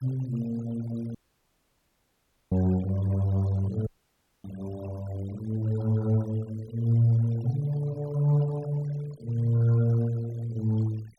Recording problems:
denoising artefacts; signal-to-artefact ratio 23 dB
audio cutting out; at 1 s for 1.5 s and at 4 s for 0.5 s

